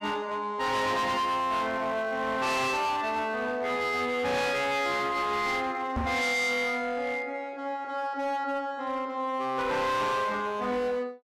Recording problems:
distortion; hard clipping, signal-to-distortion ratio 8 dB
microphone bump; at 6 s; peak 0 dB vs average level

